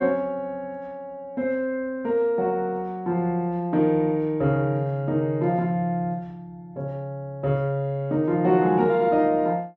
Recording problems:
none

